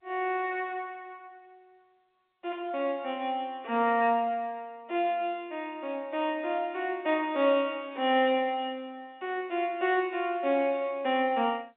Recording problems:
telephone audio; 280 Hz to 3.6 kHz, G.711

